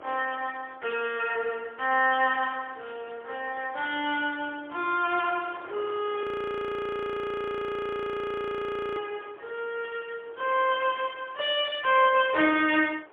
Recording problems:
telephone audio; 280 Hz to 3.5 kHz, AMR-NB, then MP3
wind on the microphone; below 1.3 kHz, SNR 22 dB
audio freezing; at 6 s for 2.5 s

